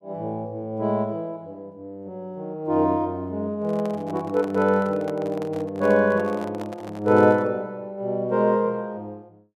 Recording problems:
handling noise; from 3.5 to 7.5 s; peak -8 dB vs average level

